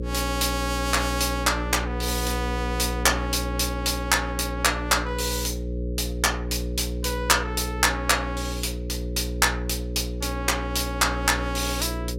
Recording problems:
hum; 60 Hz, harmonics up to 540 Hz, SNR 5 dB

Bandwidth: 16 kHz